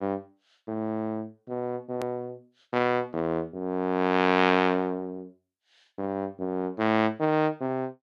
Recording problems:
click at an edit; at 2 s

